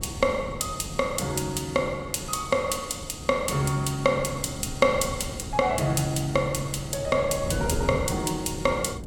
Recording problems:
wind on the microphone; below 250 Hz, SNR 11 dB

